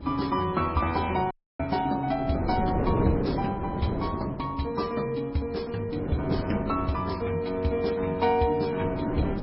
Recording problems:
lossy codec; MP3, log-spectral distance 3 dB, nothing above 5.3 kHz
wind noise; below 430 Hz, SNR 5 dB
audio cutting out; at 1.5 s

